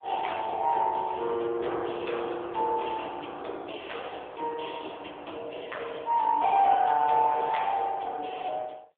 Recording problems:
phone line; 300 Hz to 3.5 kHz, AMR-NB

